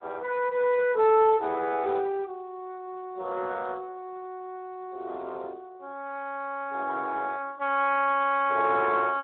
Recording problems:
telephone audio; 260 Hz to 3.6 kHz, Speex

